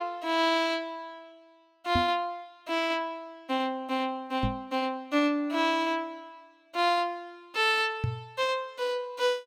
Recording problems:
microphone bump; at 2 s, at 4.5 s and at 8 s; peak +3 dB vs average level

